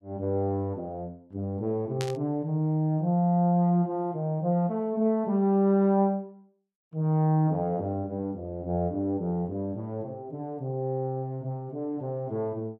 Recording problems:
static burst; at 2 s; peak -4 dB vs average level

